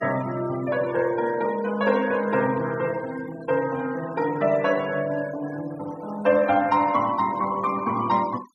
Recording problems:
denoising artefacts; signal-to-artefact ratio 18 dB

